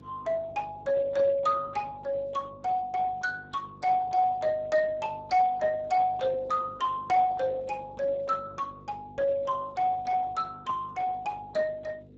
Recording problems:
lossy codec; Speex, log-spectral distance 3 dB
hum; 50 Hz, harmonics up to 600 Hz, SNR 22 dB

